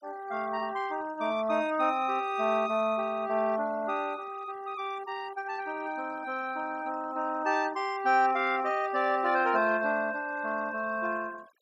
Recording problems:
denoising artefacts; signal-to-artefact ratio 22 dB

